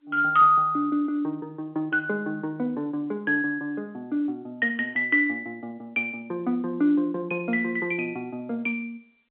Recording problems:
phone line; 220 Hz to 3.6 kHz, G.711

